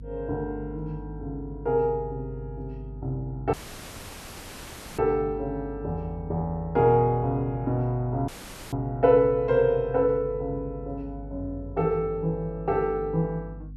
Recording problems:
hum; 50 Hz, harmonics up to 300 Hz, SNR 14 dB
dropout; at 3.5 s for 1.5 s and at 8.5 s

